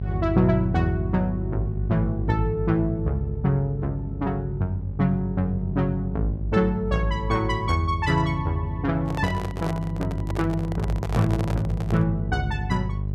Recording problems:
hum; 50 Hz, harmonics up to 450 Hz, SNR 6 dB
handling noise; from 9 to 12 s; peak -1 dB vs average level

